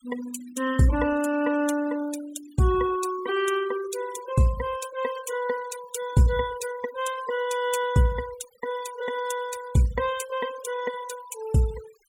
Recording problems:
noise reduction artefacts; signal-to-artefact ratio 15 dB

